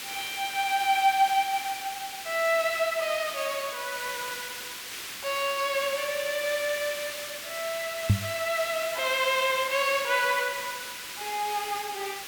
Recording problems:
hiss; SNR 8 dB
microphone bump; at 8 s; peak +9 dB vs average level

